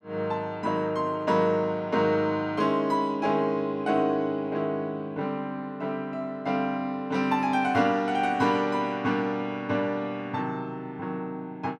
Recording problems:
none

